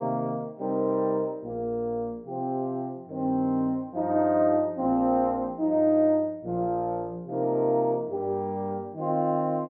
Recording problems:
none

